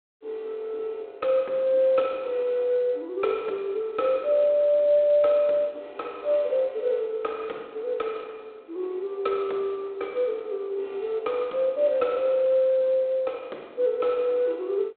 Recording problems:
telephone audio; 320 Hz to 3.9 kHz, G.726

